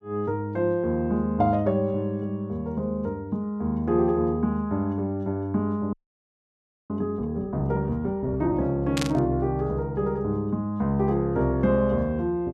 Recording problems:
frozen audio; at 6 s for 1 s
burst of static; at 9 s; peak +1 dB vs average level

